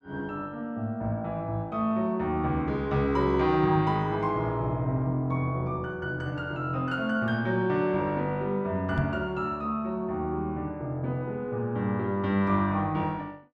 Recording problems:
microphone thump; at 9 s; peak +3 dB vs average level

